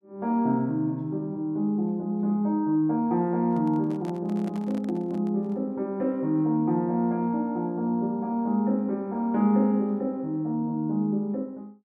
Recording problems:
handling noise; from 3.5 to 5.5 s; peak -12 dB vs average level

